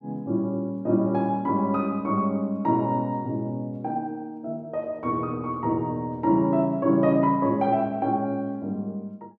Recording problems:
none

